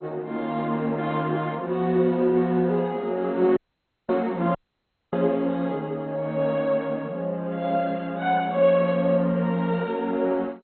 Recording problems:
codec artefacts; MP2, then MP2, log-spectral distance 2 dB, nothing above 3.9 kHz
dropout; at 3.5 s for 0.5 s and at 4.5 s for 0.5 s

